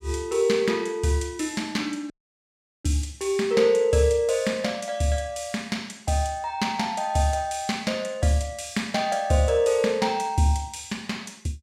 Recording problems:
audio cutting out; at 2 s for 0.5 s

